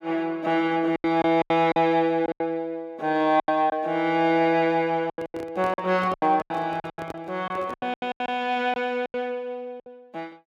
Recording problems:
lost packets; 13% of the sound replaced, filled with silence
handling noise; from 5 to 8 s; peak -8 dB vs average level

